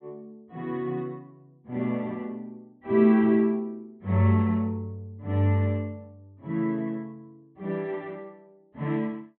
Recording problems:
treble missing; nothing above 4 kHz

